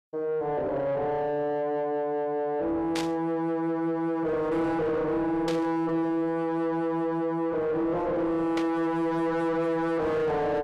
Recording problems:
distorted audio; soft clipping, signal-to-distortion ratio 7 dB
static burst; at 3 s, at 5.5 s and at 8.5 s; peak -2 dB vs average level

